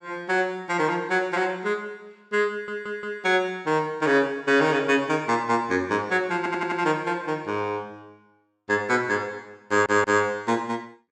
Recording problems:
stutter; at 2.5 s, at 6.5 s and at 9.5 s

